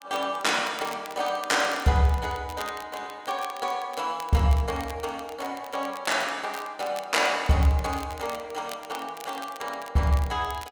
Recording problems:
crackle; vinyl, SNR 18 dB

